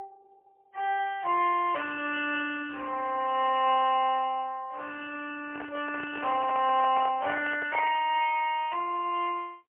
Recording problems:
phone line; 370 Hz to 3.1 kHz, AMR-NB, then MP3
microphone handling noise; from 5.5 to 8 s; peak -5 dB vs average level

